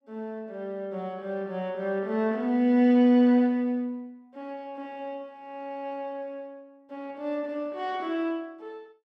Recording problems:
none

